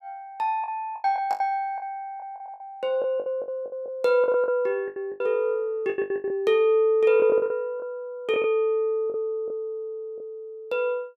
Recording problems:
packet loss; 13% of the sound replaced, filled with the last packet

